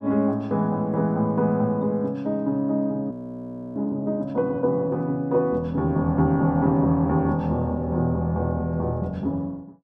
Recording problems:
frozen audio; at 3 s for 0.5 s

